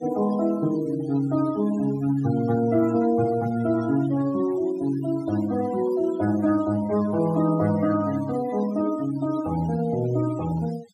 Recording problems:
denoising artefacts; signal-to-artefact ratio 16 dB

